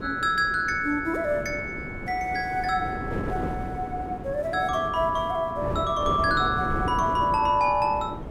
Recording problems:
hum; 60 Hz, harmonics up to 1.3 kHz, SNR 23 dB
wind noise; below 430 Hz, SNR 9 dB

